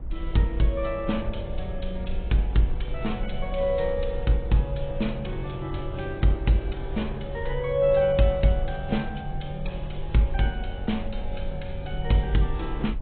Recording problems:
treble missing; nothing above 3.9 kHz
codec artefacts; AAC, log-spectral distance 2 dB
low-frequency rumble; below 54 Hz, strongest tone 20 Hz, SNR 10 dB
wind on the microphone; below 450 Hz, SNR 21 dB

